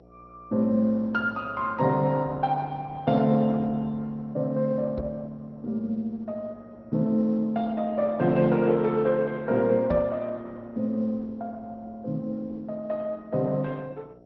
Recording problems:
lossy codec; Opus, then MP2, log-spectral distance 2 dB, nothing above 5.8 kHz
hum; 60 Hz, harmonics up to 720 Hz, SNR 27 dB
microphone bump; at 5 s and at 10 s; peak 0 dB vs average level

